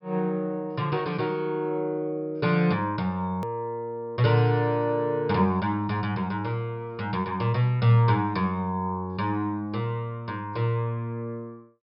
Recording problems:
treble cut off; nothing above 5.5 kHz
edit click; at 3.5 s

